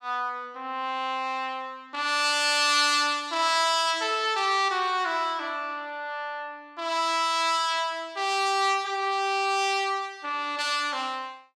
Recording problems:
none

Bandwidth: 14.5 kHz